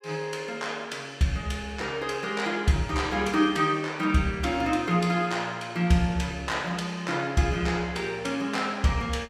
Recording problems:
none

